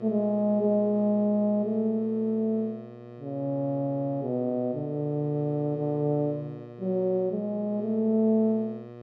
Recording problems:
hum; 60 Hz, harmonics up to 1.9 kHz, SNR 18 dB

